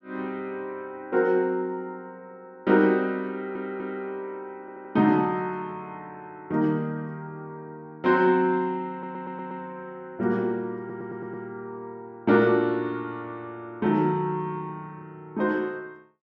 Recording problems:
stutter; 4 times, first at 3.5 s

